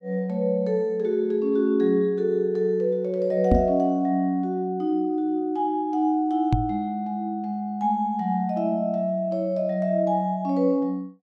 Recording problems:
microphone bump; at 3.5 s and at 6.5 s; peak +7 dB vs average level

